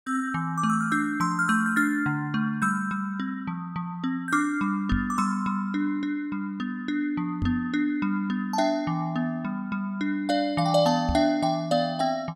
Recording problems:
knock on the microphone; at 5 s, at 7.5 s and at 11 s; peak +1 dB vs average level

